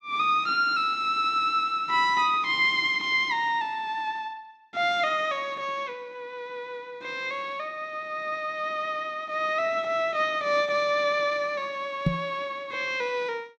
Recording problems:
microphone bump; at 12 s; peak +6 dB vs average level

